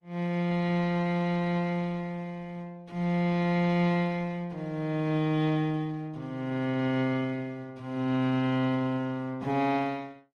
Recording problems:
lossy compression; Opus, log-spectral distance 2 dB

